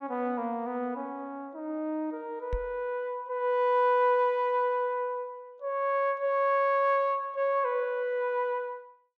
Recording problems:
knock on the microphone; at 2.5 s; peak -2 dB vs average level

